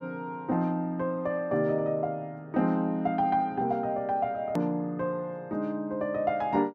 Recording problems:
edit click; at 4.5 s

